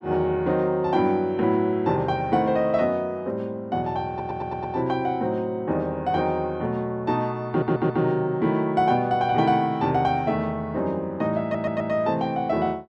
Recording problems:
audio stuttering; at 4 s, at 7.5 s and at 11 s

